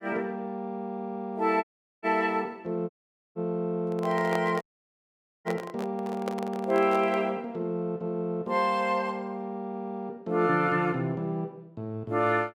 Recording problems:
dropout; at 1.5 s, at 3 s and at 4.5 s for 1 s
microphone handling noise; from 4 to 7 s; peak 0 dB vs average level

